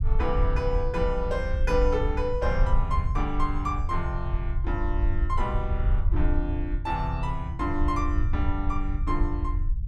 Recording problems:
low-frequency rumble; below 68 Hz, SNR -1 dB

